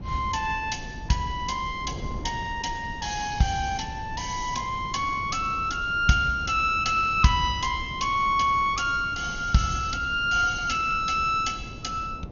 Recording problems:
lossy compression; MP2, log-spectral distance 6 dB, nothing above 6.7 kHz
wind on the microphone; below 230 Hz, SNR 14 dB

